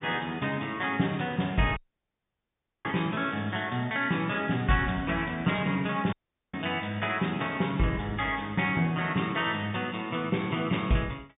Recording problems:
treble cut off; nothing above 3.7 kHz
dropout; at 2 s for 1 s and at 6 s

